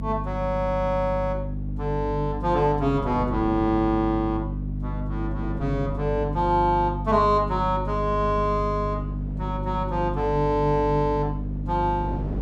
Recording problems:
electrical hum; 50 Hz, harmonics up to 300 Hz, SNR 6 dB
wind noise; below 400 Hz, SNR 17 dB

